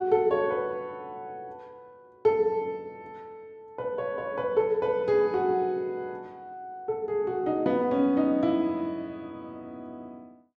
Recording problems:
none

